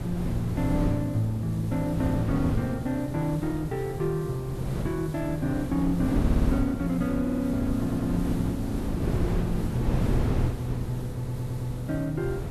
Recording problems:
hiss; SNR 22 dB
wind noise; below 260 Hz, SNR 3 dB
stutter; 4 times, first at 6 s

